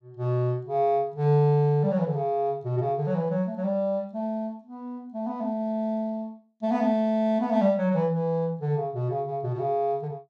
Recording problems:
none

